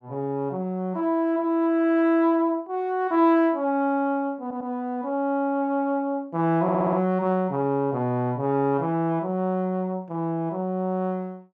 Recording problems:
stutter; at 4.5 s and at 6.5 s

